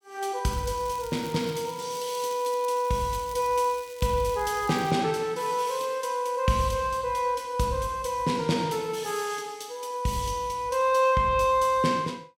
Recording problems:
crackling; from 0.5 to 5 s; loose cable, SNR 20 dB

